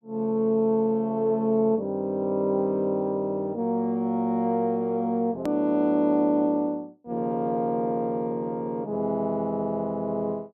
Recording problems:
click at an edit; at 5.5 s

